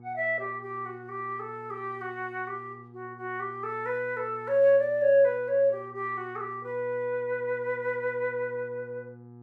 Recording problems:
hum; 60 Hz, harmonics up to 1.2 kHz, SNR 21 dB

